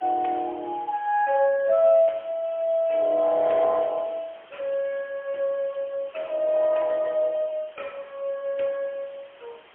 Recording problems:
telephone audio; 300 Hz to 3.9 kHz, AMR-NB, then MP3
background hiss; SNR 26 dB

